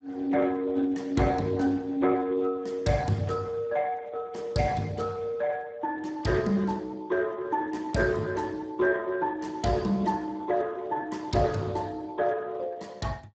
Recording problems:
lossy compression; Speex, log-spectral distance 3 dB, nothing above 7.6 kHz

